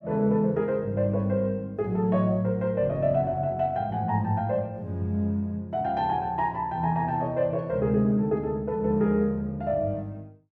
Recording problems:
none

